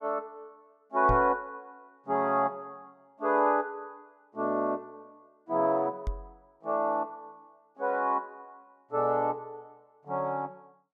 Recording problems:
knock on the microphone; at 1 s and at 6 s; peak +1 dB vs average level

